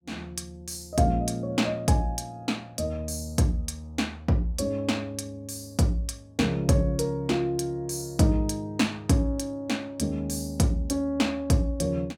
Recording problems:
none

